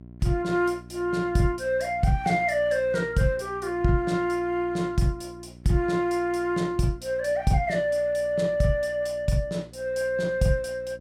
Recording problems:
hum; 60 Hz, harmonics up to 720 Hz, SNR 21 dB

